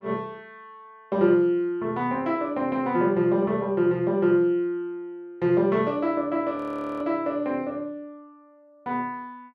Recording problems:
frozen audio; at 6.5 s

